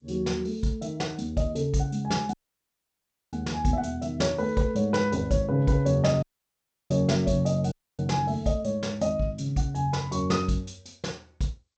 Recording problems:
lossy compression; G.722, log-spectral distance 3 dB, nothing above 7.3 kHz
audio cutting out; at 2.5 s for 1 s, at 6 s for 0.5 s and at 7.5 s

